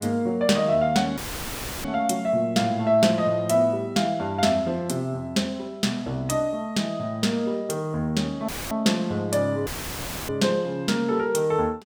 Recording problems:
dropout; at 1 s for 0.5 s, at 8.5 s and at 9.5 s for 0.5 s; filled with static

